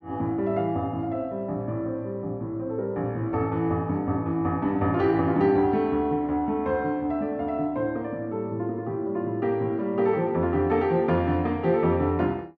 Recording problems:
none

